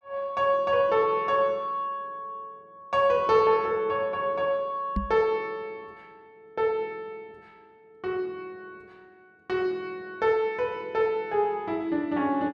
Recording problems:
microphone thump; at 5 s; peak +1 dB vs average level

